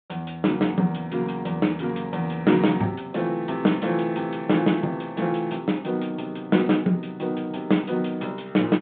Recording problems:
phone line; 110 Hz to 3.7 kHz, G.726

